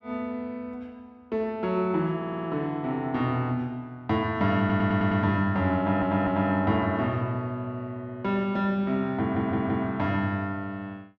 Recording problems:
audio stuttering; 4 times, first at 2 s

